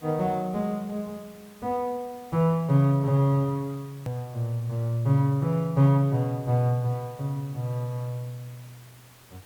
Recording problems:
hiss; slope -2 dB per octave, SNR 26 dB
hard cut with a click; at 4 s

